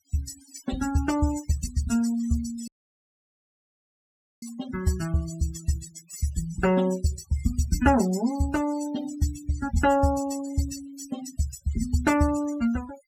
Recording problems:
noise reduction artefacts; signal-to-artefact ratio 13 dB
audio cutting out; at 2.5 s for 1.5 s

